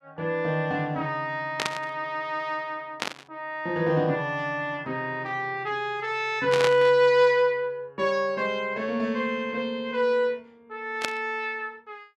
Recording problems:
burst of static; 4 times, first at 1.5 s; peak +3 dB vs average level

